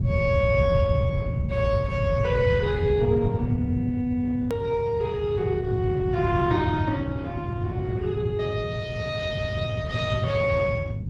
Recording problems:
lossy compression; Opus, log-spectral distance 2 dB
low-frequency rumble; below 140 Hz, SNR 1 dB
hard cut with a click; at 4.5 s

